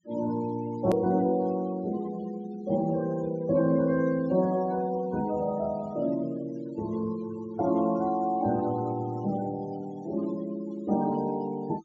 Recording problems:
treble missing; nothing above 8 kHz
noise reduction artefacts; signal-to-artefact ratio 20 dB
edit click; at 1 s

